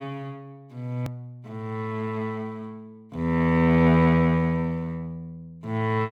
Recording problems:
hard cut with a click; at 1 s

